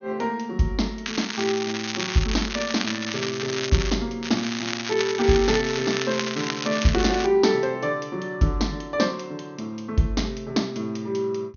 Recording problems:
treble missing; nothing above 6.6 kHz
crackling; from 1 to 4 s and from 4 to 7.5 s; loose cable, SNR 5 dB

